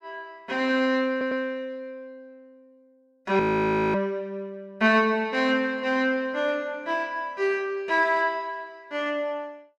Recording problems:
stutter; at 1 s
audio freezing; at 3.5 s for 0.5 s

